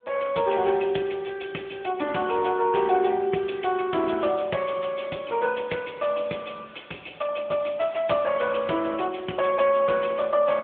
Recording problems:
phone line; 220 Hz to 3.4 kHz, AMR-NB

